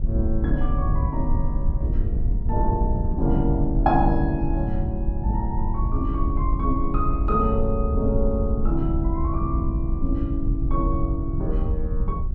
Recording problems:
wind on the microphone; below 70 Hz, SNR -1 dB

